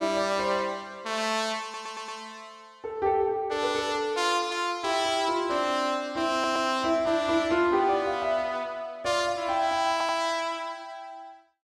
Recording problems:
audio stuttering; at 1.5 s, at 6.5 s and at 10 s

